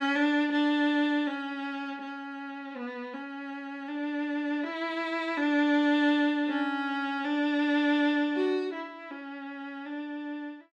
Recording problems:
none

